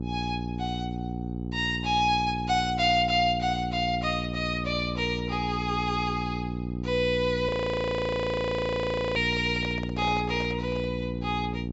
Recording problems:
treble cut off; nothing above 8 kHz
electrical hum; 60 Hz, harmonics up to 780 Hz, SNR 5 dB
frozen audio; at 7.5 s for 1.5 s
microphone handling noise; from 9 to 11 s; peak -9 dB vs average level

